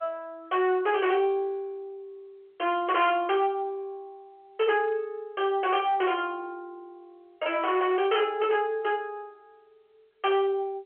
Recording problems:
phone line; 340 Hz to 3.3 kHz, G.711
distorted audio; hard clipping, uneven, signal-to-distortion ratio 10 dB

